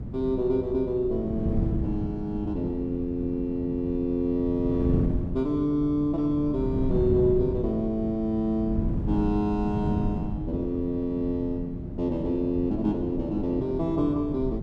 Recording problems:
wind on the microphone; below 200 Hz, SNR 5 dB

